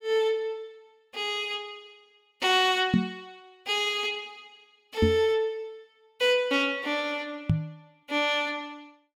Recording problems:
microphone thump; at 3 s, at 5 s and at 7.5 s; peak +7 dB vs average level

